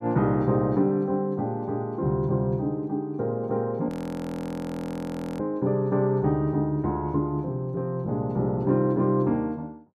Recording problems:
audio freezing; at 4 s for 1.5 s

